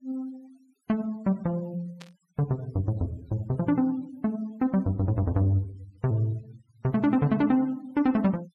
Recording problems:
denoising artefacts; signal-to-artefact ratio 26 dB
static burst; at 2 s; peak -14 dB vs average level

